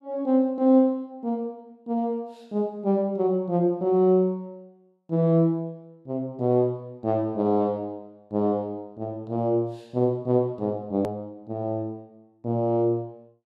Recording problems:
click at an edit; at 11 s

